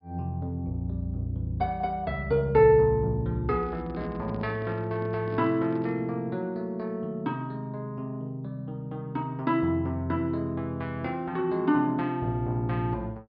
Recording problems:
treble missing; nothing above 5.5 kHz
microphone handling noise; from 3.5 to 6 s; peak -9 dB vs average level

